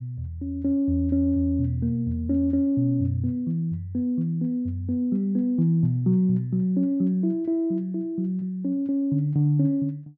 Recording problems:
none

